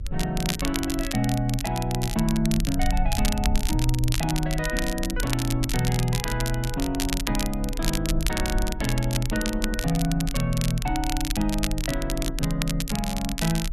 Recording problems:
rumble; below 46 Hz, strongest tone 32 Hz, SNR 6 dB
crackle; vinyl, SNR 5 dB

